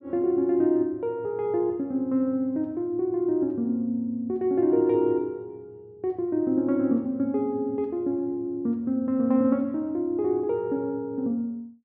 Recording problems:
none

